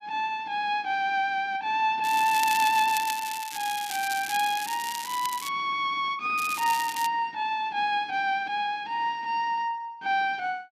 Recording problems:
crackle; from 2 to 5.5 s and at 6.5 s; loose cable, SNR 9 dB

